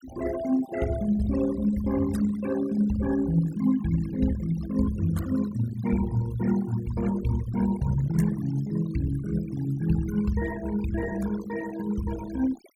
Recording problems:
noise reduction artefacts; signal-to-artefact ratio 15 dB

